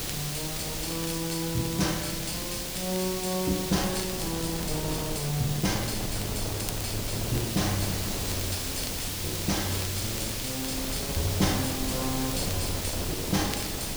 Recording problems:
background hiss; SNR 1 dB
wind on the microphone; below 520 Hz, SNR 6 dB
crackling; vinyl, SNR 14 dB

